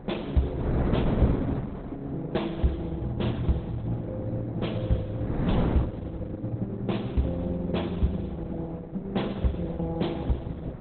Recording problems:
lossy codec; Opus, log-spectral distance 3 dB, nothing above 3.9 kHz
wind noise; below 400 Hz, SNR 6 dB

